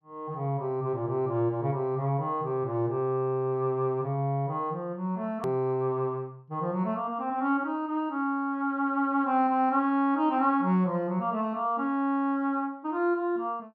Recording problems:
hard cut with a click; at 5.5 s

